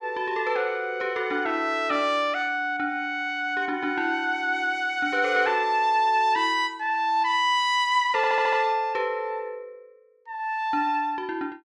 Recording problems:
audio stuttering; at 8 s

